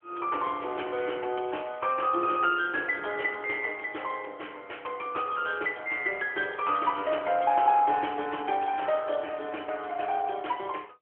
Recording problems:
telephone audio; 300 Hz to 3.3 kHz, AMR-NB

